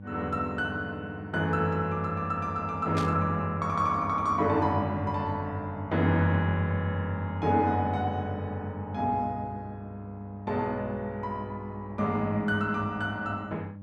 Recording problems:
hum; 50 Hz, harmonics up to 600 Hz, SNR 12 dB
burst of static; at 3 s; peak -5 dB vs average level

